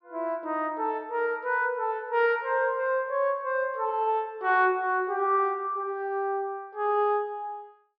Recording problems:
low-pass filter; nothing above 5.5 kHz

